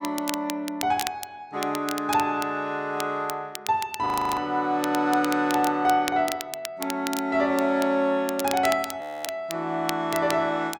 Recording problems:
crackling; vinyl, SNR 11 dB
frozen audio; at 4 s and at 9 s

